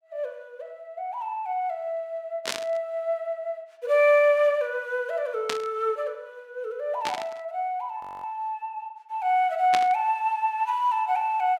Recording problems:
static burst; 4 times, first at 2.5 s; peak +2 dB vs average level
audio freezing; at 8 s

